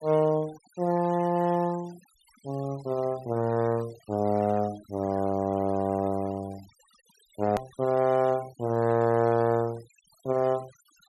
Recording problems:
noise reduction artefacts; signal-to-artefact ratio 22 dB
hard cut with a click; at 7.5 s

